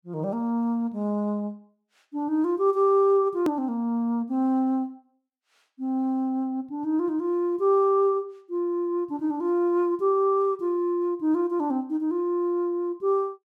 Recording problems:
hard cut with a click; at 3.5 s

